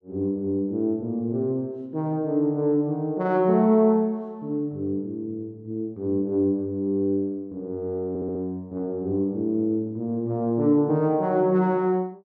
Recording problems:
stutter; at 8 s

